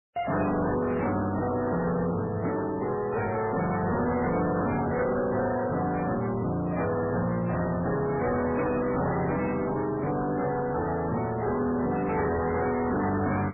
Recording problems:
lossy compression; MP3, then AAC, log-spectral distance 4 dB, nothing above 2.4 kHz
distortion; soft clipping, signal-to-distortion ratio 8 dB

